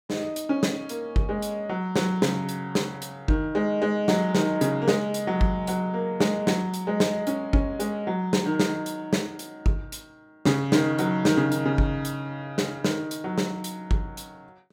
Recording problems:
none

